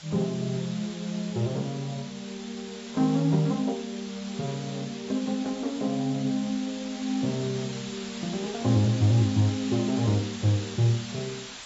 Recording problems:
lossy codec; AAC, log-spectral distance 12 dB
background hiss; SNR 13 dB

